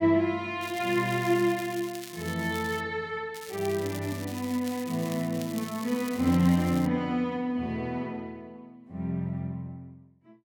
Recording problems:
crackle; from 0.5 to 3 s and from 3.5 to 7 s; loose cable, SNR 15 dB

